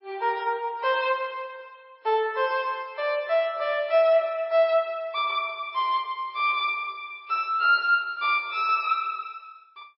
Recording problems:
lossy compression; MP3, log-spectral distance 2 dB, nothing above 4.8 kHz

